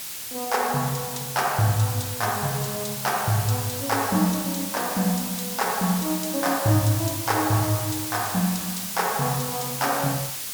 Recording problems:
background hiss; slope +2 dB per octave, SNR 4 dB

